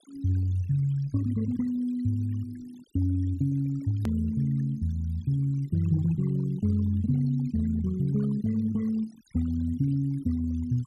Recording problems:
denoising artefacts; signal-to-artefact ratio 21 dB
edit click; at 4 s

